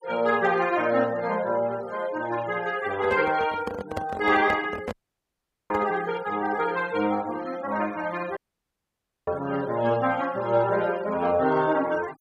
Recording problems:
denoising artefacts; signal-to-artefact ratio 20 dB
handling noise; from 3 to 6 s; peak -2 dB vs average level
audio cutting out; at 5 s for 1 s and at 8.5 s for 1 s

